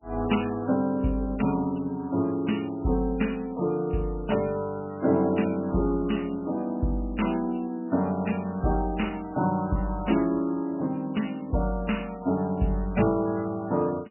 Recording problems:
lossy compression; MP3, log-spectral distance 3 dB, nothing above 2.9 kHz

